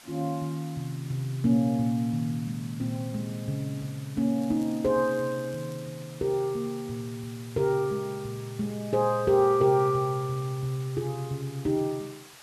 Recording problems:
hiss; slope 0 dB per octave, SNR 20 dB
crackling; from 4.5 to 6 s; loose cable, SNR 27 dB

